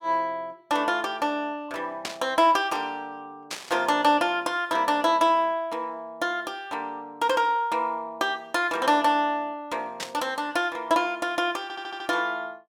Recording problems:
burst of static; at 2 s, at 3.5 s and at 10 s; peak -1 dB vs average level
audio stuttering; at 12 s

